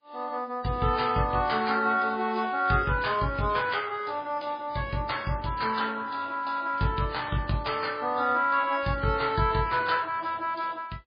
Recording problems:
codec artefacts; MP3, log-spectral distance 4 dB, nothing above 4.5 kHz

